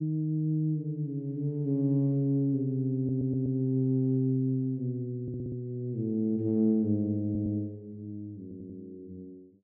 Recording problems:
audio stuttering; 4 times, first at 3 s

